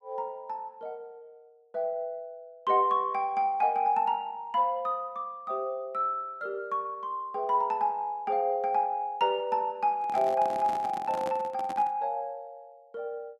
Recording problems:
microphone handling noise; from 10 to 12 s; peak -6 dB vs average level

